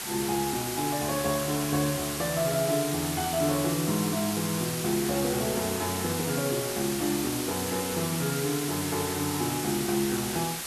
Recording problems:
hiss; slope 0 dB per octave, SNR 3 dB

